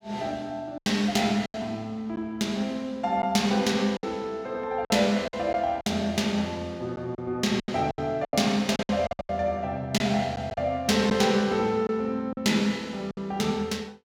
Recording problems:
packet loss; 8% of the sound replaced, filled with silence

